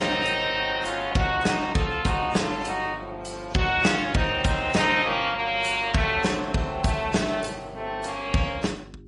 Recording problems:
codec artefacts; MP3, then AAC, log-spectral distance 3 dB, nothing above 10.4 kHz
electrical hum; 50 Hz, harmonics up to 400 Hz, SNR 21 dB

